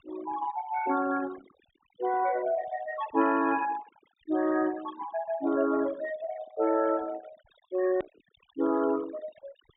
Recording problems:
low-pass filter; nothing above 4 kHz
denoising artefacts; signal-to-artefact ratio 17 dB
edit click; at 8 s

